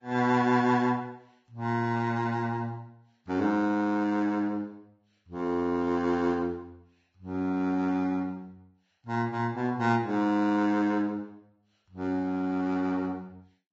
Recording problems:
lossy compression; Vorbis, log-spectral distance 2 dB

